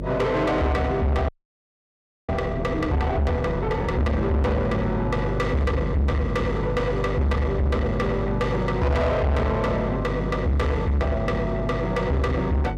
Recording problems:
distortion; soft clipping, signal-to-distortion ratio 6 dB
hum; 50 Hz, harmonics up to 550 Hz, SNR 5 dB
audio freezing; at 1.5 s for 1 s

